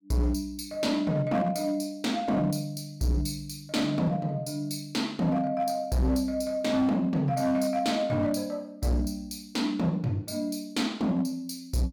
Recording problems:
distorted audio; hard clipping, signal-to-distortion ratio 11 dB

